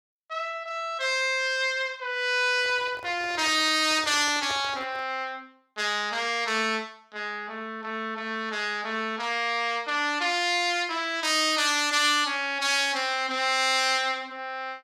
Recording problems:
microphone handling noise; from 2.5 to 5 s; peak -11 dB vs average level

